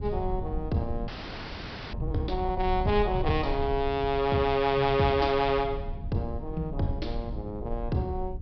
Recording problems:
treble missing; nothing above 5.5 kHz
rumble; below 78 Hz, SNR 9 dB
audio freezing; at 1 s for 1 s

